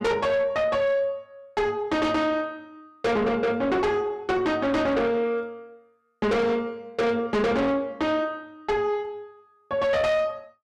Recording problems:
distortion; soft clipping, signal-to-distortion ratio 7 dB

